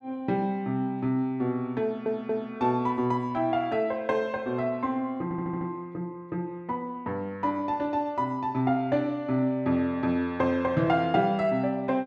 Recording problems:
stutter; at 2 s and at 5 s

